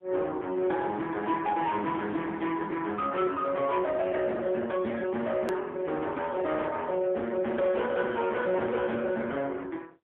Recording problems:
telephone audio; 240 Hz to 3.8 kHz, AMR-NB, then MP3
distortion; hard clipping, signal-to-distortion ratio 12 dB
hard cut with a click; at 5.5 s

